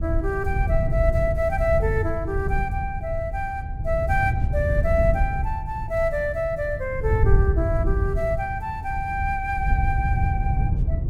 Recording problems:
wind noise; below 100 Hz, SNR 0 dB

